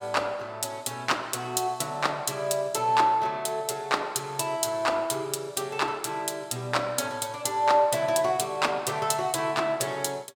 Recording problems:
none

